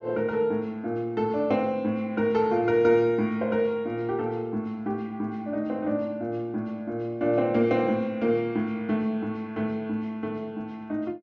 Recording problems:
treble missing; nothing above 8 kHz

